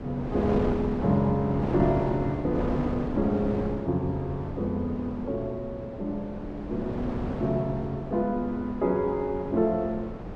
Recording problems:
wind on the microphone; below 520 Hz, SNR 6 dB

